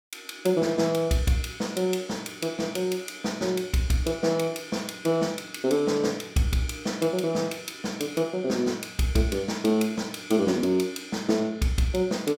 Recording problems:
none

